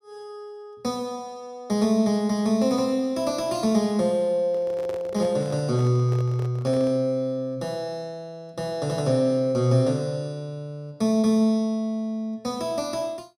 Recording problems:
handling noise; from 4.5 to 7 s; peak -9 dB vs average level

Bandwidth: 15.5 kHz